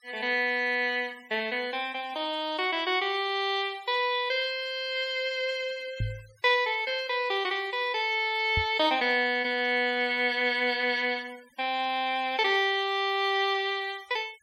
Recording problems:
denoising artefacts; signal-to-artefact ratio 26 dB
microphone thump; at 6 s and at 8.5 s; peak 0 dB vs average level

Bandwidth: 16 kHz